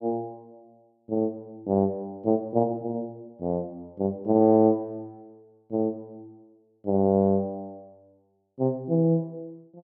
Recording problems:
none

